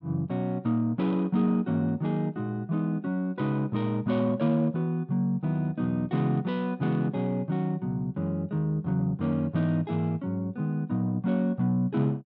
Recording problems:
none

